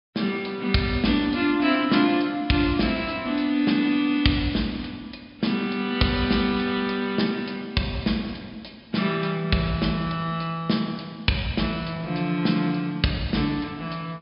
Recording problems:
treble missing; nothing above 5.5 kHz

